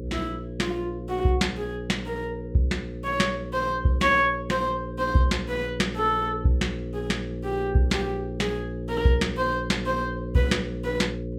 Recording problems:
hum; 60 Hz, harmonics up to 540 Hz, SNR 8 dB

